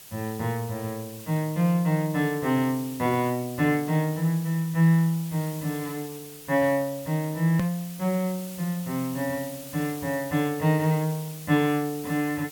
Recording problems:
hiss; slope 0 dB per octave, SNR 15 dB
hard cut with a click; at 7.5 s

